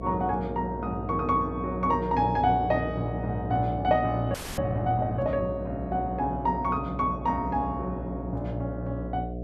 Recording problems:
electrical hum; 60 Hz, harmonics up to 720 Hz, SNR 8 dB
frozen audio; at 4.5 s

